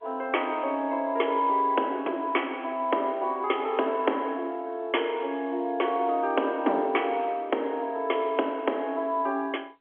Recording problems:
telephone audio; 240 Hz to 3.4 kHz, G.711

